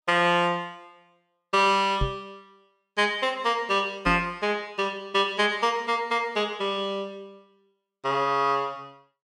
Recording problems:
knock on the microphone; at 2 s and at 4 s; peak +1 dB vs average level

